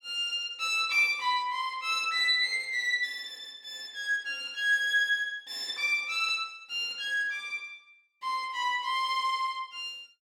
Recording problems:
none

